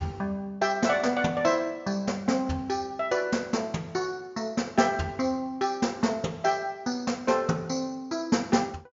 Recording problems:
treble missing; nothing above 7.2 kHz

